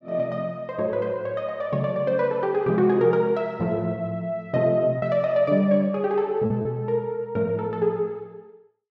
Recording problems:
packet loss; 1.3% of the sound replaced, filled with repeated pitch periods

